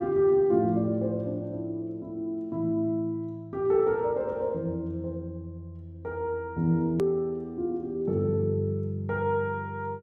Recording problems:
click at an edit; at 7 s

